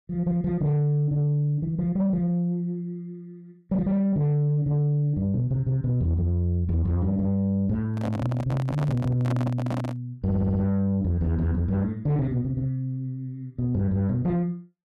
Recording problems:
distortion; soft clipping, signal-to-distortion ratio 11 dB
microphone handling noise; from 8 to 10 s; peak -2 dB vs average level
audio stuttering; at 10 s

